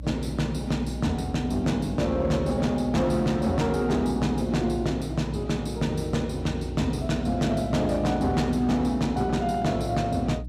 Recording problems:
distorted audio; hard clipping, signal-to-distortion ratio 12 dB
electrical hum; 60 Hz, harmonics up to 300 Hz, SNR 11 dB

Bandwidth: 15.5 kHz